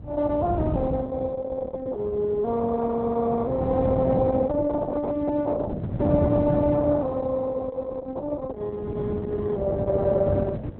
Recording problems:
codec artefacts; Opus, log-spectral distance 3 dB, nothing above 4 kHz
wind on the microphone; below 220 Hz, SNR 5 dB

